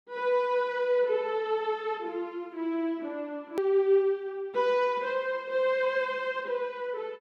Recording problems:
hard cut with a click; at 3.5 s

